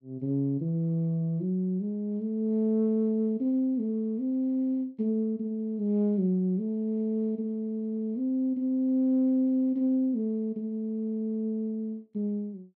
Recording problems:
none

